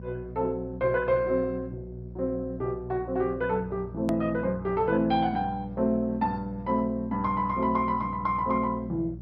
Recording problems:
lossy codec; MP2, log-spectral distance 2 dB, nothing above 13.1 kHz
mains hum; 60 Hz, harmonics up to 540 Hz, SNR 13 dB
edit click; at 4 s

